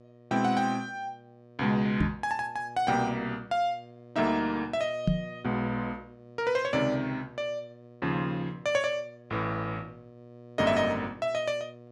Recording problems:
hum; 60 Hz, harmonics up to 1.3 kHz, SNR 21 dB
microphone thump; at 2 s and at 5 s; peak +7 dB vs average level

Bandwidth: 12 kHz